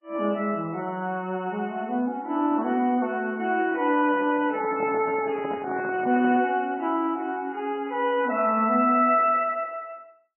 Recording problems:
lossy compression; MP3, log-spectral distance 3 dB, nothing above 2.7 kHz
handling noise; from 4 to 6.5 s; peak -6 dB vs average level

